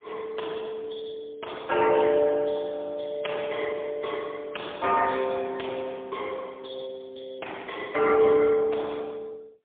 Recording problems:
telephone audio; 300 Hz to 3.5 kHz, AMR-NB, then MP3

